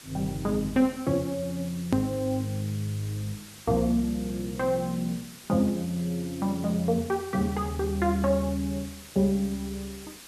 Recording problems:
background hiss; SNR 17 dB
edit click; at 2 s

